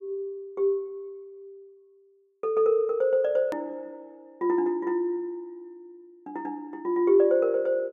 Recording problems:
hard cut with a click; at 3.5 s

